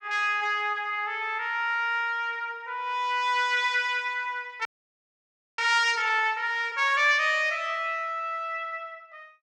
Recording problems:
audio freezing; at 4.5 s for 1 s

